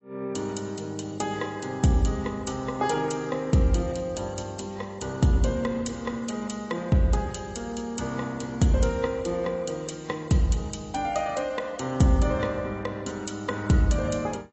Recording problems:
lossy compression; AAC, log-spectral distance 4 dB, nothing above 7.8 kHz

